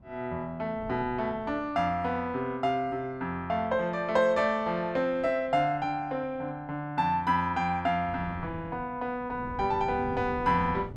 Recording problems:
wind on the microphone; below 230 Hz, SNR 16 dB

